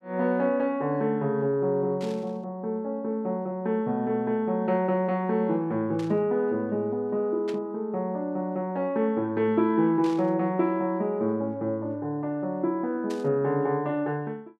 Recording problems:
static burst; 5 times, first at 2 s; peak -11 dB vs average level

